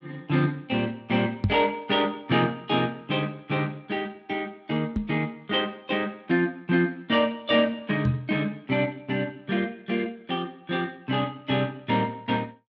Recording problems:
lossy codec; Speex, log-spectral distance 3 dB
knock on the microphone; at 1.5 s, at 5 s and at 8 s; peak +6 dB vs average level

